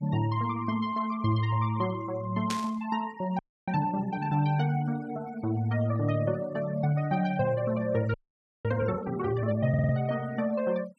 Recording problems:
denoising artefacts; signal-to-artefact ratio 21 dB
burst of static; at 2.5 s; peak -1 dB vs average level
frozen audio; at 3.5 s and at 8 s for 0.5 s
stutter; at 9.5 s

